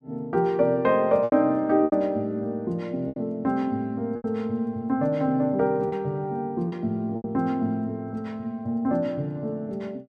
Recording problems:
packet loss; 5% of the sound replaced, filled with repeated pitch periods

